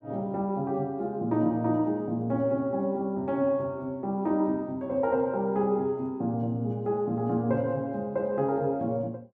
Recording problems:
none

